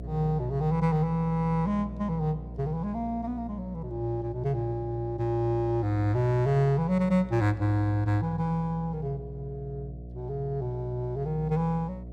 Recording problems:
hum; 60 Hz, harmonics up to 720 Hz, SNR 13 dB

